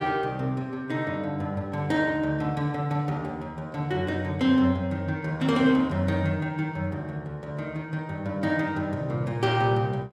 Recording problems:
none

